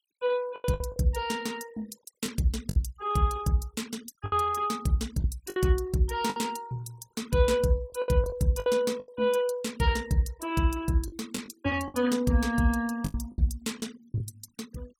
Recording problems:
noise reduction artefacts; signal-to-artefact ratio 23 dB
lost packets; 8% of the sound replaced, filled with the last packet

